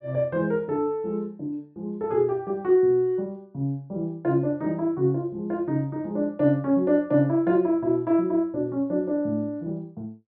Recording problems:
low-pass filter; nothing above 5.5 kHz

